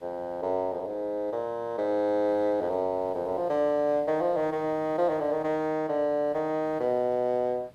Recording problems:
background hiss; slope -5 dB per octave, SNR 28 dB

